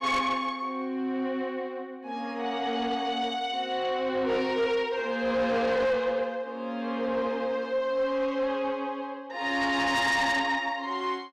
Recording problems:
distortion; soft clipping, signal-to-distortion ratio 11 dB

